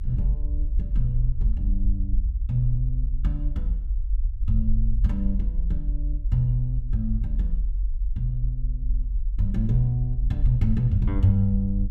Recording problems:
rumble; below 48 Hz, strongest tone 42 Hz, SNR 1 dB

